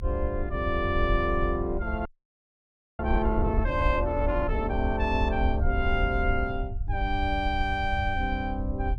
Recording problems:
rumble; below 72 Hz, SNR 3 dB
frozen audio; at 2 s for 1 s

